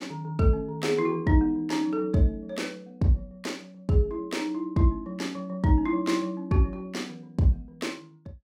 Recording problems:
none

